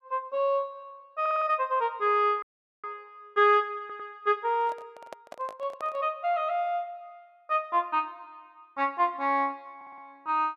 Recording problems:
stutter; at 1 s, at 4 s and at 10 s
audio freezing; at 2.5 s
microphone handling noise; from 4.5 to 6 s; peak -10 dB vs average level

